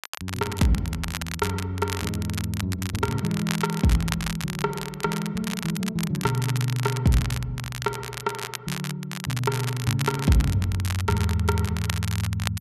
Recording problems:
crackling; vinyl, SNR 8 dB

